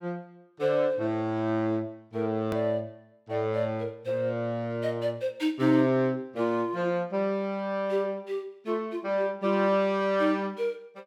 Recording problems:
edit click; at 2.5 s

